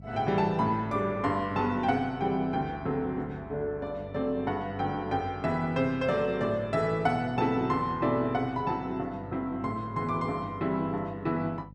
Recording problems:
electrical hum; 50 Hz, harmonics up to 550 Hz, SNR 18 dB

